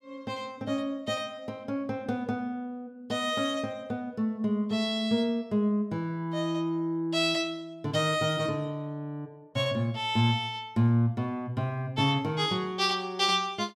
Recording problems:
none

